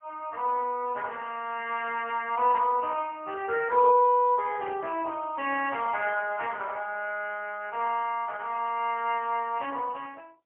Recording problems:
telephone audio; 260 Hz to 3.3 kHz, AMR-NB, then MP3

